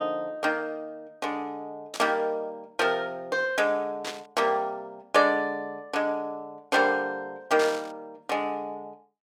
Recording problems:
burst of static; at 2 s, at 4 s and at 7.5 s; peak -3 dB vs average level

